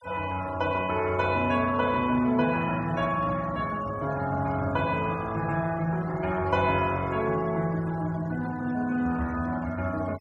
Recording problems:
noise reduction artefacts; signal-to-artefact ratio 20 dB

